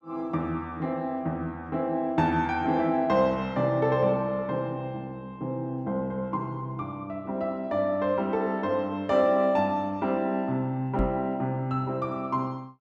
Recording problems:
microphone bump; at 11 s; peak +2 dB vs average level

